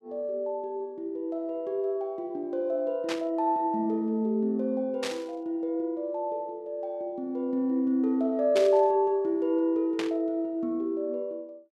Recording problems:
burst of static; 4 times, first at 3 s; peak -1 dB vs average level

